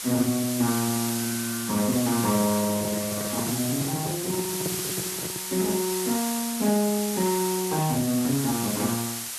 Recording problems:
lossy compression; Speex, log-spectral distance 3 dB
hiss; slope +2 dB per octave, SNR 3 dB
microphone handling noise; from 2.5 to 5.5 s; peak -2 dB vs average level

